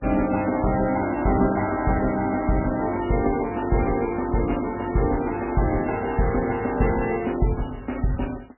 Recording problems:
lossy compression; MP3, log-spectral distance 6 dB, nothing above 2.8 kHz

